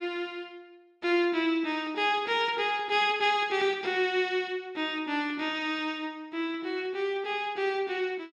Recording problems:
none

